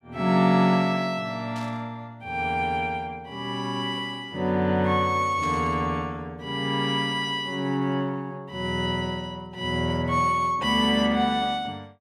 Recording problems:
burst of static; at 1.5 s and at 5.5 s; peak -13 dB vs average level

